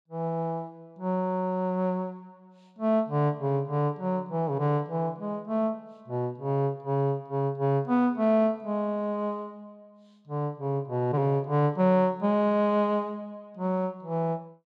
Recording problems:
none

